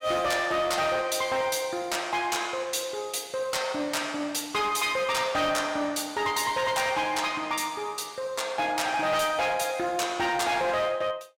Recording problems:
distortion; hard clipping, signal-to-distortion ratio 11 dB

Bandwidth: 16.5 kHz